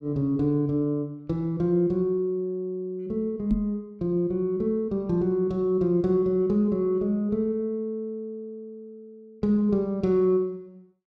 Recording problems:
knock on the microphone; at 3.5 s; peak +1 dB vs average level

